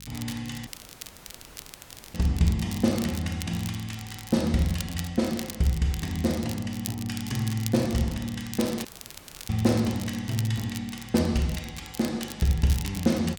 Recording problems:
hum; 50 Hz, harmonics up to 500 Hz, SNR 23 dB
crackling; vinyl, SNR 13 dB
audio cutting out; at 0.5 s for 1.5 s and at 9 s for 0.5 s

